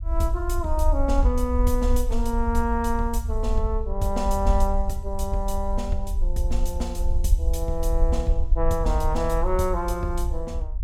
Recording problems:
rumble; below 58 Hz, SNR -1 dB

